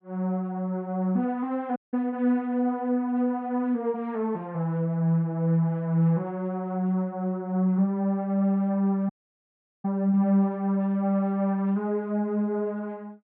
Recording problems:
audio cutting out; at 2 s and at 9 s for 0.5 s

